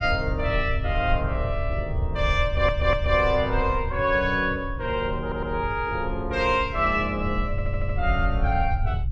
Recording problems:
low-frequency rumble; below 90 Hz, SNR 5 dB
stutter; at 2.5 s, at 5 s and at 7.5 s

